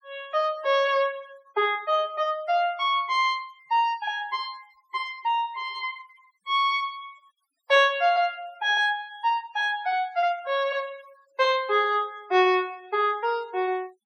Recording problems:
noise reduction artefacts; signal-to-artefact ratio 27 dB

